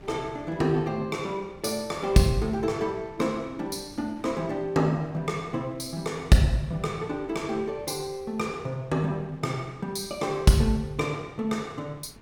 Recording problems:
wind noise; below 520 Hz, SNR 24 dB

